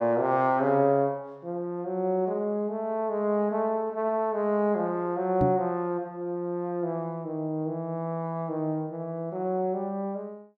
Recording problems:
microphone thump; at 5.5 s; peak +4 dB vs average level

